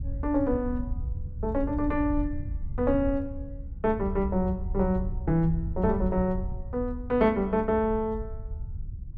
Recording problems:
wind on the microphone; below 84 Hz, SNR 8 dB

